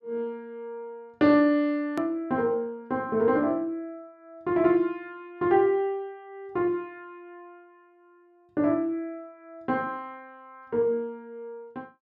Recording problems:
hard cut with a click; at 2 s

